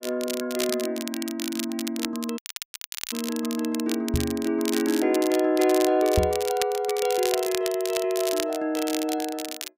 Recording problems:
crackle; vinyl, SNR 8 dB
dropout; at 2.5 s for 0.5 s
microphone bump; at 4 s and at 6 s; peak +5 dB vs average level

